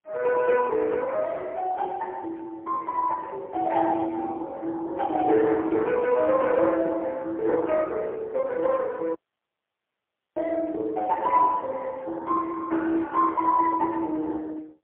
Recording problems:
telephone audio; 280 Hz to 3 kHz, AMR-NB, then MP3
dropout; at 9 s for 1 s

